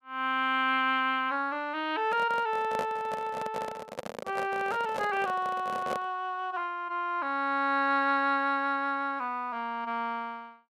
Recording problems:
microphone handling noise; from 2 to 6 s; peak -1 dB vs average level

